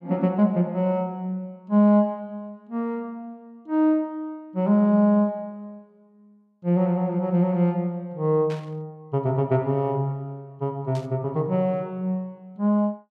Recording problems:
burst of static; at 8.5 s and at 11 s; peak -13 dB vs average level

